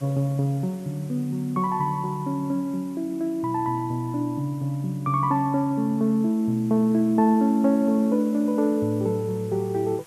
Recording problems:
background hiss; slope -2 dB per octave, SNR 27 dB

